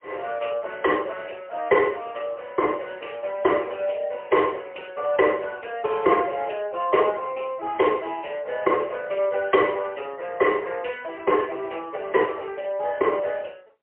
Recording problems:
telephone audio; 260 Hz to 3.1 kHz, AMR-NB, then MP3

